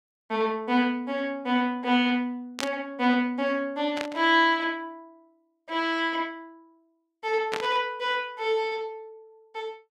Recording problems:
static burst; at 2.5 s, at 4 s and at 7.5 s; peak 0 dB vs average level

